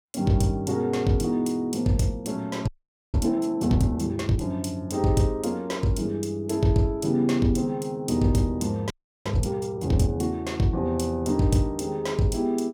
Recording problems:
audio freezing; at 2.5 s and at 9 s

